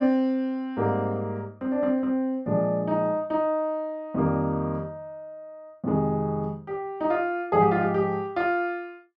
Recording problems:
none

